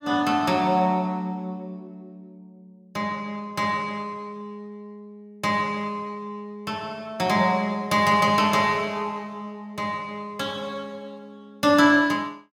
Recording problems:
none

